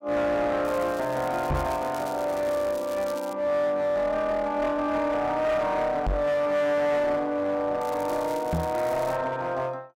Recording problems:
distortion; hard clipping, uneven, signal-to-distortion ratio 9 dB
crackling; from 0.5 to 3.5 s and from 8 to 9 s; loose cable, SNR 19 dB
microphone bump; at 1.5 s, at 6 s and at 8.5 s; peak +2 dB vs average level

